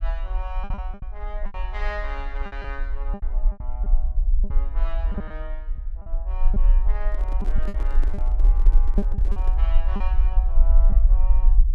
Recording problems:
low-frequency rumble; below 44 Hz, SNR -14 dB
lost packets; 9% of the sound replaced, filled with repeated pitch periods
handling noise; from 7 to 9.5 s; peak +3 dB vs average level

